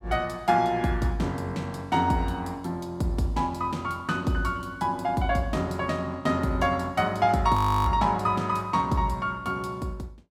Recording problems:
audio freezing; at 7.5 s

